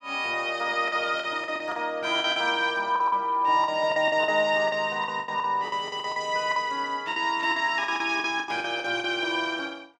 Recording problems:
lost packets; 13% of the sound replaced, filled with the last packet

